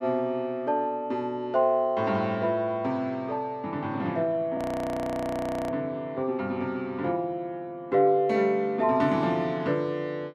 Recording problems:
frozen audio; at 4.5 s for 1 s

